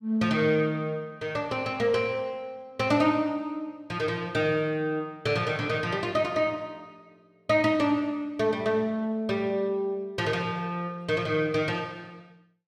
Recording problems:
none

